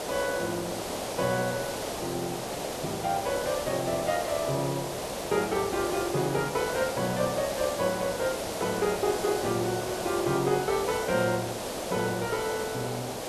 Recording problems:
hiss; SNR 3 dB

